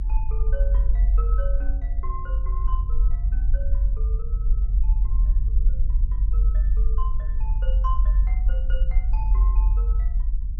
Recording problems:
low-frequency rumble; below 46 Hz, strongest tone 44 Hz, SNR -16 dB

